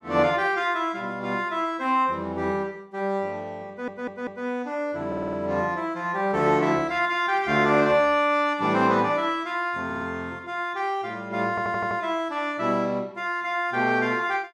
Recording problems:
stutter; 4 times, first at 3.5 s

